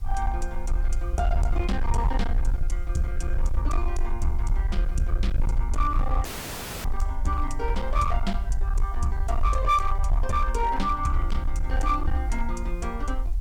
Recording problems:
distorted audio; hard clipping, signal-to-distortion ratio 10 dB
background hiss; slope -3 dB per octave, SNR 29 dB
low-frequency rumble; below 54 Hz, SNR -1 dB
audio cutting out; at 6.5 s for 0.5 s

